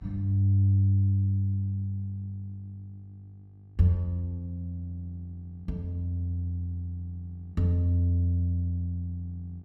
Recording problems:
hum; 50 Hz, harmonics up to 850 Hz, SNR 30 dB

